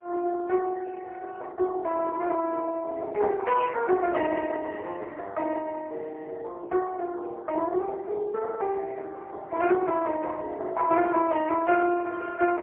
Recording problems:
telephone audio; 300 Hz to 3.2 kHz, AMR-NB, then MP3

